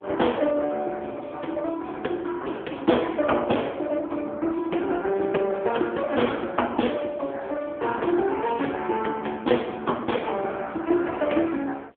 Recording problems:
phone line; 260 Hz to 3.4 kHz, AMR-NB

